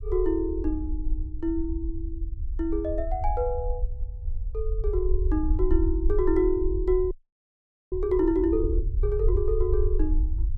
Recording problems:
rumble; below 58 Hz, SNR 3 dB
audio freezing; at 7 s for 1 s

